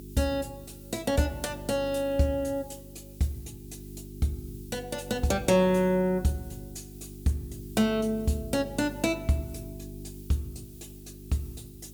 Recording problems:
electrical hum; 50 Hz, harmonics up to 400 Hz, SNR 15 dB
hiss; slope +6 dB per octave, SNR 23 dB

